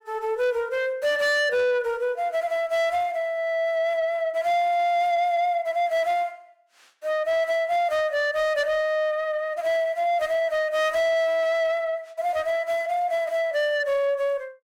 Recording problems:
distorted audio; soft clipping, signal-to-distortion ratio 12 dB

